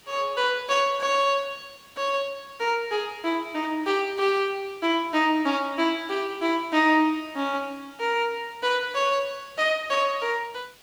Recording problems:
background hiss; slope -1 dB per octave, SNR 27 dB

